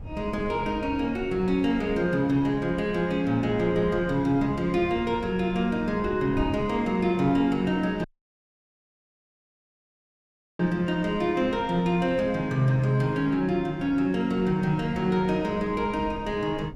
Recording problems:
wind noise; below 170 Hz, SNR 17 dB
audio cutting out; at 8 s for 2.5 s

